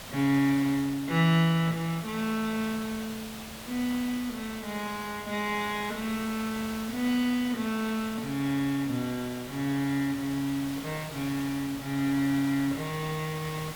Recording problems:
hiss; slope -2 dB per octave, SNR 12 dB

